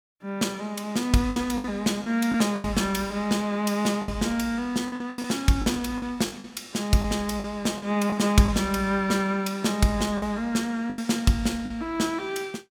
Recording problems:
lost packets; 8% of the sound replaced, filled with the last packet

